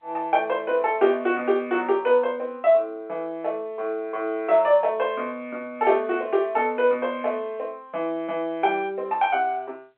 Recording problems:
telephone audio; 280 Hz to 3.3 kHz, G.711

